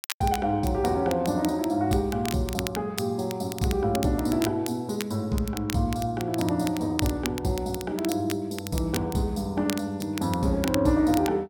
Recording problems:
crackling; vinyl, SNR 12 dB

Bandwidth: 17 kHz